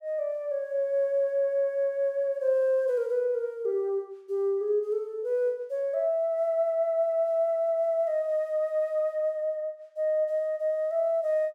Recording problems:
none

